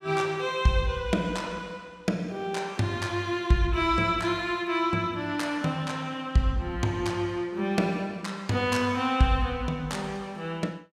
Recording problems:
none

